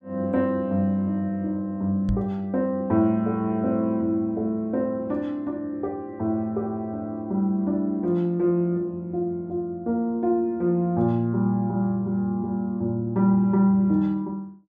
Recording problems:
microphone thump; at 2 s; peak +1 dB vs average level

